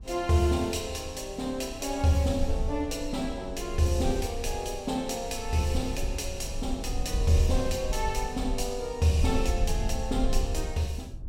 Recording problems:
low-frequency rumble; below 60 Hz, SNR 6 dB

